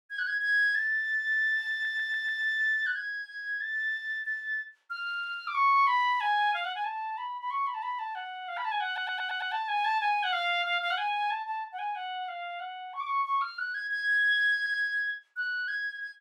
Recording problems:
audio stuttering; at 1.5 s, at 9 s and at 15 s

